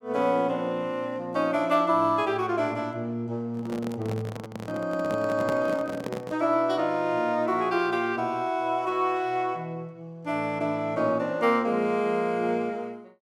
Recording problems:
microphone handling noise; from 3.5 to 6.5 s; peak -2 dB vs average level

